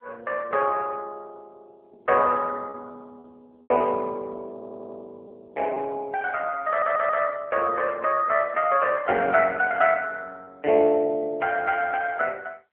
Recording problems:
telephone audio; 340 Hz to 3.1 kHz, AMR-NB
packet loss; 3% of the sound replaced, filled with repeated pitch periods
stutter; at 4.5 s and at 6.5 s

